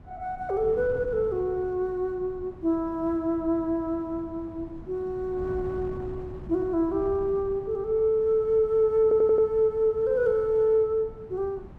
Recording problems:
wind on the microphone; below 260 Hz, SNR 18 dB
audio stuttering; at 9 s

